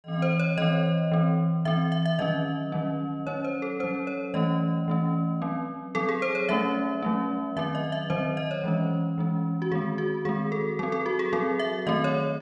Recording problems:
none

